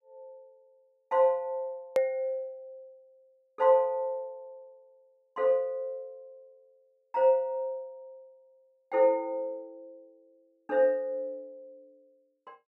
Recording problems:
click at an edit; at 2 s

